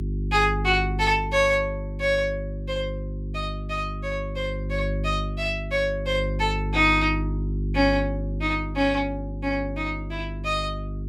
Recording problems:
hum; 50 Hz, harmonics up to 400 Hz, SNR 5 dB

